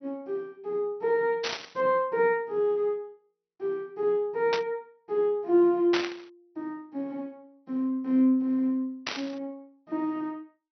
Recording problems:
low-pass filter; nothing above 6 kHz
burst of static; 4 times, first at 1.5 s; peak +2 dB vs average level

